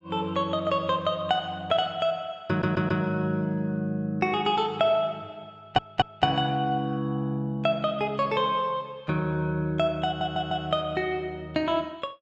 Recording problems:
audio stuttering; at 2.5 s, at 5.5 s and at 10 s

